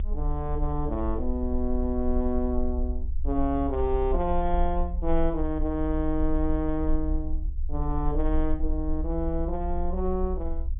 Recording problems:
low-pass filter; nothing above 3.5 kHz
rumble; below 62 Hz, strongest tone 20 Hz, SNR 3 dB

